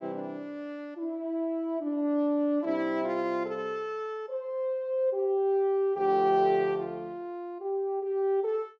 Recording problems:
none

